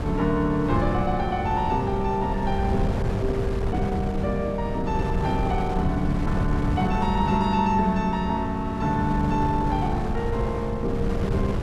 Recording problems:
wind on the microphone; below 170 Hz, SNR 4 dB

